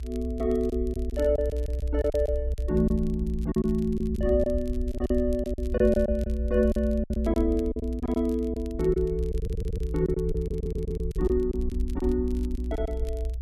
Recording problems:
rumble; below 62 Hz, strongest tone 60 Hz, SNR 5 dB
crackling; vinyl, SNR 27 dB
lost packets; 10% of the sound replaced, filled with silence
audio stuttering; at 9.5 s and at 10 s

